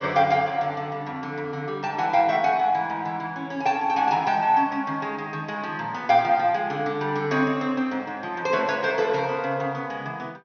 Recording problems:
treble cut off; nothing above 6.4 kHz

